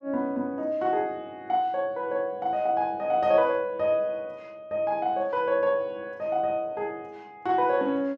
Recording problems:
none

